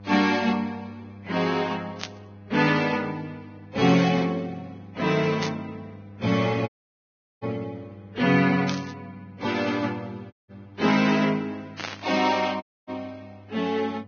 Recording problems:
codec artefacts; Vorbis, log-spectral distance 3 dB, nothing above 6.3 kHz
hum; 50 Hz, harmonics up to 1 kHz, SNR 21 dB
static burst; 4 times, first at 2 s; peak -2 dB vs average level
audio cutting out; at 6.5 s for 0.5 s, at 10 s and at 13 s

